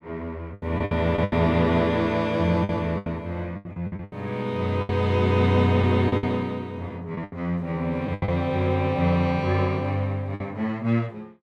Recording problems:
lost packets; 10% of the sound replaced, filled with the last packet

